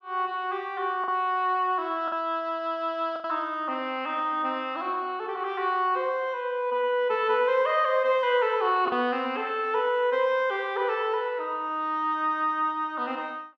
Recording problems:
packet loss; 1.5% of the sound replaced, filled with the last packet

